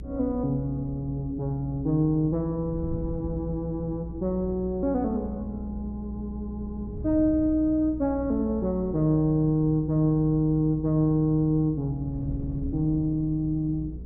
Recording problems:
hum; 60 Hz, harmonics up to 480 Hz, SNR 13 dB
wind on the microphone; below 150 Hz, SNR 15 dB

